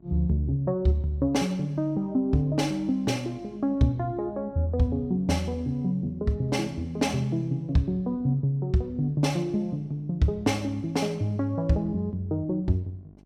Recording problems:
hum; 50 Hz, harmonics up to 800 Hz, SNR 27 dB

